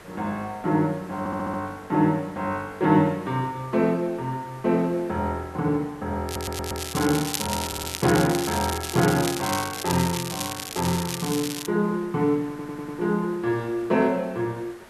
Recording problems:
background hiss; SNR 21 dB
stutter; 4 times, first at 1 s
crackling; from 6.5 to 12 s; loose cable, SNR 6 dB

